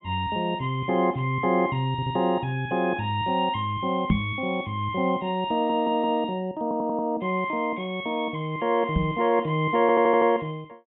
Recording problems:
treble missing; nothing above 3.6 kHz
audio stuttering; 4 times, first at 2 s
microphone thump; at 4 s and at 9 s; peak +5 dB vs average level

